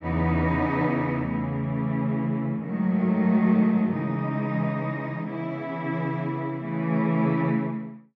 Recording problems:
none

